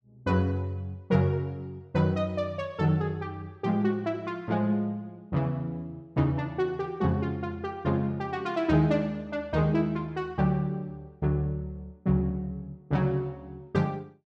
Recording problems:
none

